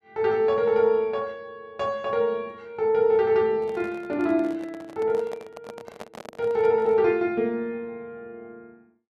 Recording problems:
handling noise; from 3.5 to 7 s; peak -10 dB vs average level

